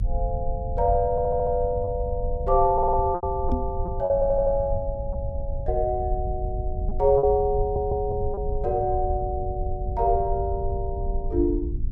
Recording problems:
rumble; below 76 Hz, SNR 6 dB
packet loss; 3% of the sound replaced, filled with repeated pitch periods
stutter; 4 times, first at 1 s
microphone thump; at 3.5 s; peak +2 dB vs average level

